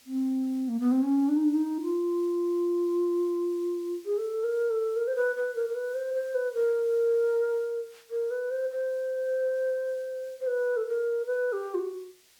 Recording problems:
hiss; SNR 28 dB

